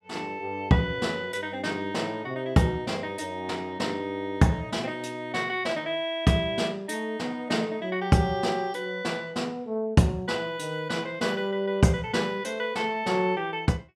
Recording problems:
none

